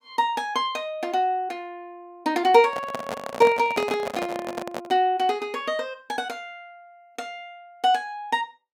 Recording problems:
handling noise; from 2.5 to 5 s; peak -1 dB vs average level

